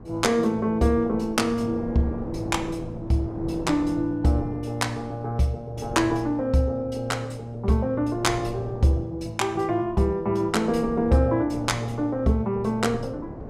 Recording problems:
wind on the microphone; below 450 Hz, SNR 15 dB

